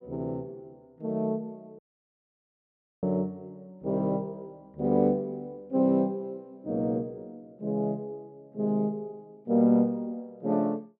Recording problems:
audio cutting out; at 2 s for 1 s

